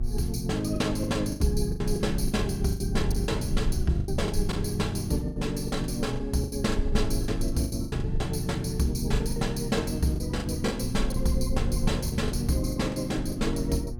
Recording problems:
hum; 60 Hz, harmonics up to 840 Hz, SNR 11 dB
low-frequency rumble; below 54 Hz, SNR 7 dB
lost packets; 13% of the sound replaced, filled with the last packet

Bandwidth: 17 kHz